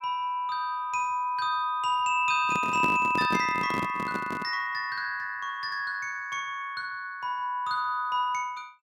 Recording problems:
handling noise; from 2.5 to 4.5 s; peak +2 dB vs average level

